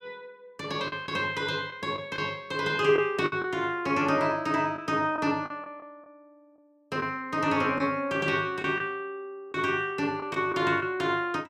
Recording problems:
packet loss; 5% of the sound replaced, filled with the last packet

